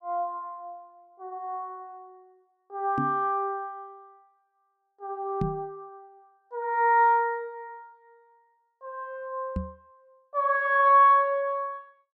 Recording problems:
knock on the microphone; at 3 s, at 5.5 s and at 9.5 s; peak -1 dB vs average level

